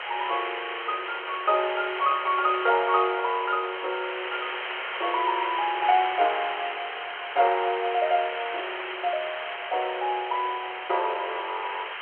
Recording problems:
phone line; 340 Hz to 3.4 kHz, G.726
background hiss; SNR 6 dB

